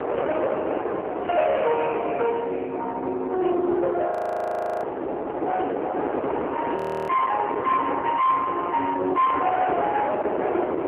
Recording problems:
phone line; 300 Hz to 2.5 kHz, AMR-NB
distorted audio; soft clipping, signal-to-distortion ratio 8 dB
wind noise; below 900 Hz, SNR 5 dB
audio freezing; at 4 s for 0.5 s and at 7 s

